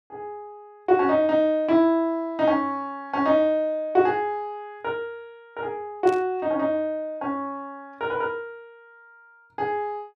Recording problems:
static burst; at 6 s; peak -13 dB vs average level

